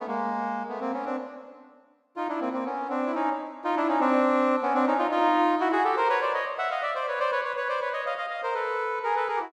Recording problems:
none

